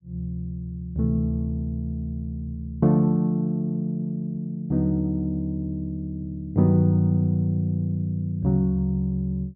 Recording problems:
none

